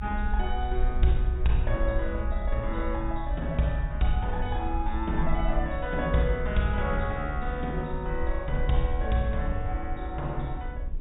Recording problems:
treble missing; nothing above 4 kHz
low-frequency rumble; below 60 Hz, SNR 3 dB
wind noise; below 240 Hz, SNR 17 dB

